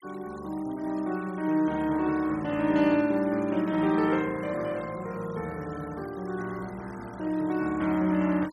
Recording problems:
denoising artefacts; signal-to-artefact ratio 22 dB

